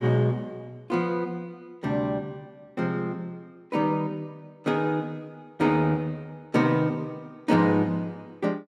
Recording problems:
none

